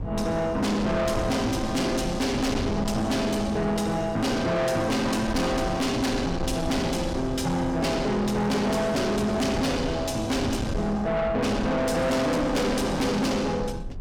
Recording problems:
distorted audio; soft clipping, signal-to-distortion ratio 6 dB
low-frequency rumble; below 290 Hz, SNR 10 dB

